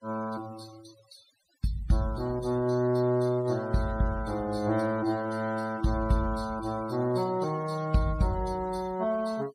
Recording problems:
noise reduction artefacts; signal-to-artefact ratio 21 dB

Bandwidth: 15.5 kHz